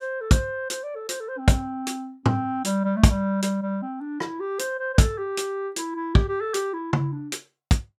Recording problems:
none

